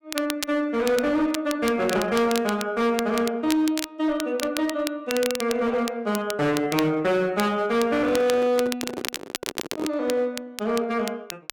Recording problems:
distortion; hard clipping, uneven, signal-to-distortion ratio 11 dB
crackling; vinyl, SNR 11 dB
handling noise; from 8 to 10 s; peak -2 dB vs average level

